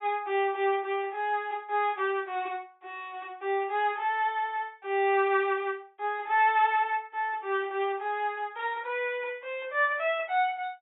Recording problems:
low-pass filter; nothing above 3.6 kHz

